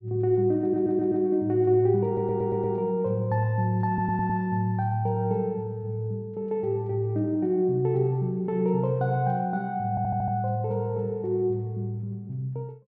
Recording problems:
audio stuttering; 4 times, first at 0.5 s

